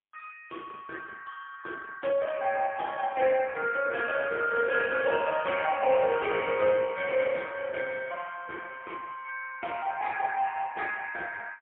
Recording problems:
telephone audio; 370 Hz to 2.8 kHz, AMR-NB, then MP3

